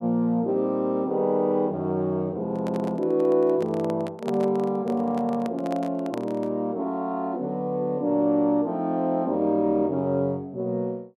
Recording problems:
microphone handling noise; from 2.5 to 6.5 s; peak -3 dB vs average level

